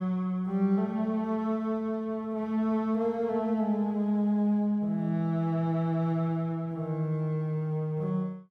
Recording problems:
none

